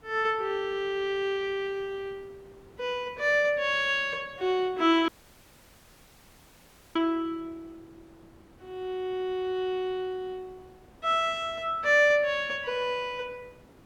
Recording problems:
hiss; slope -7 dB per octave, SNR 28 dB
dropout; at 5 s for 2 s

